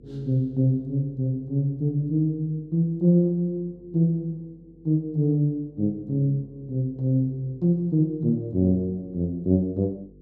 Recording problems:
hum; 50 Hz, harmonics up to 500 Hz, SNR 28 dB

